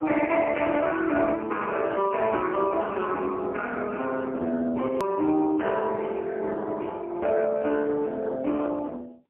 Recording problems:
telephone audio; 240 Hz to 3.1 kHz, AMR-NB, then MP3
edit click; at 5 s

